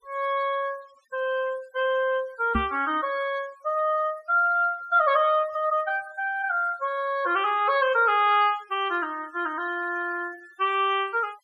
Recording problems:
denoising artefacts; signal-to-artefact ratio 23 dB
microphone bump; at 2.5 s; peak +1 dB vs average level

